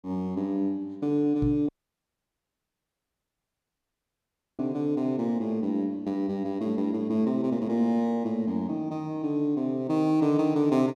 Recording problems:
microphone bump; at 1.5 s; peak 0 dB vs average level
dropout; at 1.5 s for 3 s

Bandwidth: 14.5 kHz